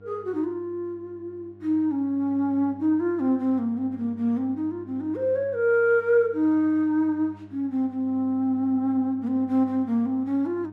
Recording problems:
electrical hum; 50 Hz, harmonics up to 800 Hz, SNR 23 dB

